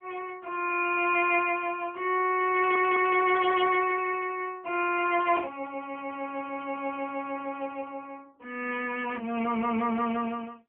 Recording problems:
phone line; 240 Hz to 3.1 kHz, AMR-NB
stutter; at 2.5 s

